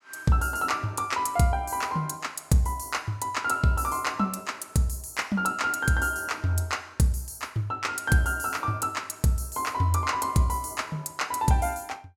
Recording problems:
none

